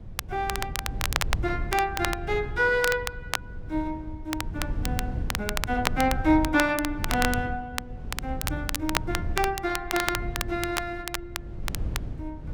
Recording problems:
rumble; below 110 Hz, SNR 7 dB
crackle; vinyl, SNR 5 dB

